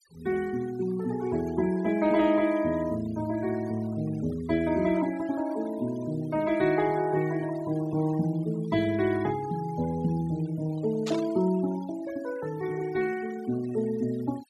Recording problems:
noise reduction artefacts; signal-to-artefact ratio 18 dB
static burst; at 11 s; peak -5 dB vs average level

